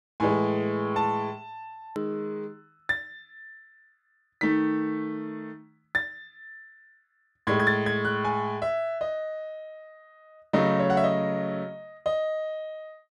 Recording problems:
hard cut with a click; at 2 s

